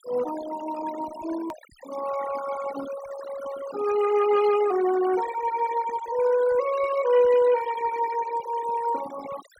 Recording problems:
denoising artefacts; signal-to-artefact ratio 13 dB
click at an edit; at 1.5 s

